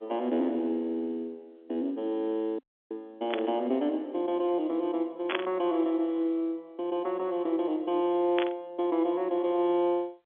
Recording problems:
phone line; 240 Hz to 3.8 kHz, G.711
audio cutting out; at 2.5 s
static burst; at 3.5 s, at 5.5 s and at 8.5 s; peak +3 dB vs average level

